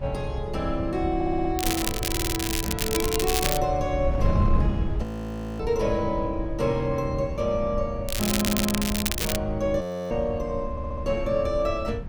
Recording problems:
wind on the microphone; below 100 Hz, SNR 5 dB
audio stuttering; 4 times, first at 1 s
crackle; from 1.5 to 3.5 s and from 8 to 9.5 s; loose cable, SNR 1 dB
frozen audio; at 5 s for 0.5 s and at 10 s

